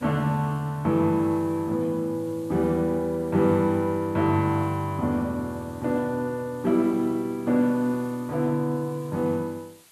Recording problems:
hiss; slope 0 dB per octave, SNR 27 dB

